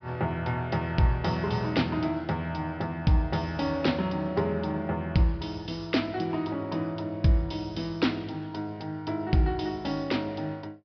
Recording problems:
treble missing; nothing above 5.5 kHz

